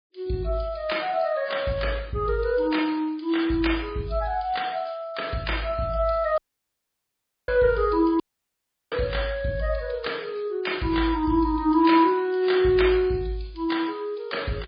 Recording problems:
codec artefacts; MP3, log-spectral distance 4 dB, nothing above 4.8 kHz
dropout; at 6.5 s for 1 s and at 8 s for 0.5 s

